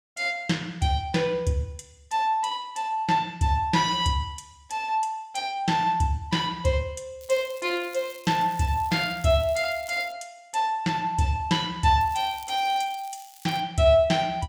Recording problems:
crackle; from 7 to 10 s and from 12 to 14 s; loose cable, SNR 22 dB

